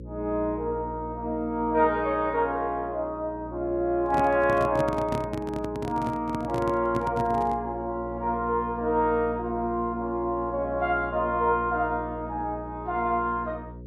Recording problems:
hum; 60 Hz, harmonics up to 540 Hz, SNR 14 dB
microphone handling noise; from 4 to 7.5 s; peak 0 dB vs average level

